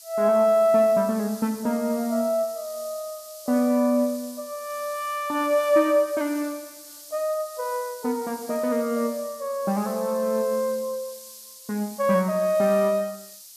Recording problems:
background hiss; SNR 17 dB

